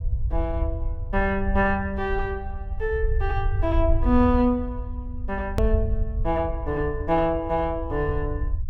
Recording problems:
rumble; below 78 Hz, SNR 4 dB
hard cut with a click; at 5.5 s

